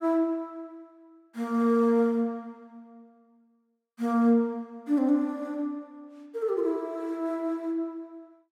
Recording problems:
none

